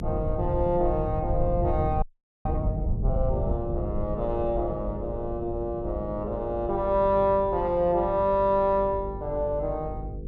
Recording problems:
hum; 50 Hz, harmonics up to 500 Hz, SNR 13 dB
rumble; below 120 Hz, SNR 7 dB
frozen audio; at 2 s

